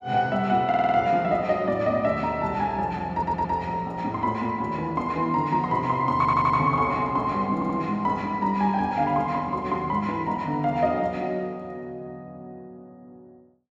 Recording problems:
audio stuttering; 4 times, first at 0.5 s

